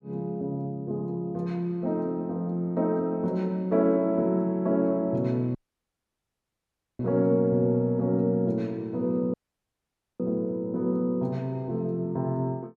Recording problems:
dropout; at 5.5 s for 1.5 s and at 9.5 s for 1 s

